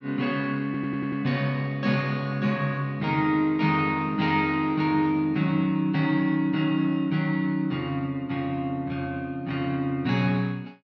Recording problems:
stutter; at 0.5 s

